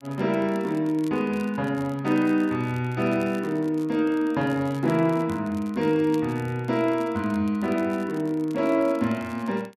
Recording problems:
crackling; vinyl, SNR 26 dB

